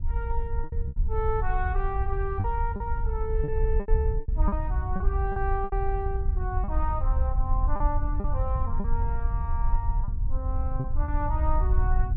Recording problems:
rumble; below 66 Hz, SNR -5 dB
packet loss; 7% of the sound replaced, filled with repeated pitch periods

